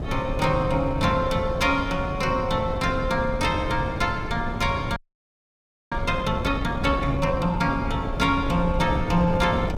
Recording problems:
wind noise; below 240 Hz, SNR 6 dB
audio freezing; at 5 s for 1 s

